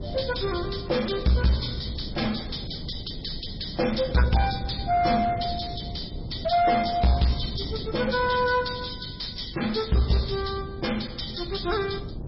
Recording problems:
codec artefacts; MP3, log-spectral distance 9 dB, nothing above 5.3 kHz
distorted audio; soft clipping, signal-to-distortion ratio 7 dB
wind on the microphone; below 220 Hz, SNR 11 dB

